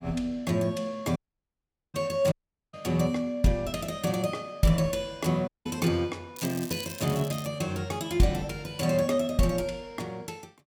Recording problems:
dropout; at 1 s for 1 s, at 2.5 s and at 5.5 s
crackle; from 6.5 to 7.5 s; loose cable, SNR 12 dB

